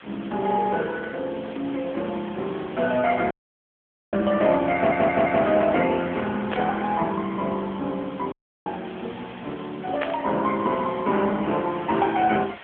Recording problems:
phone line; 170 Hz to 3.3 kHz, AMR-NB
hiss; SNR 19 dB
audio cutting out; at 3.5 s for 1 s and at 8.5 s
audio stuttering; at 5 s
static burst; at 6.5 s and at 10 s; peak -1 dB vs average level

